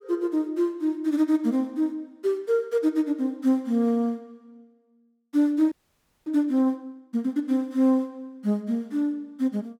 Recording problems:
frozen audio; at 5.5 s for 0.5 s

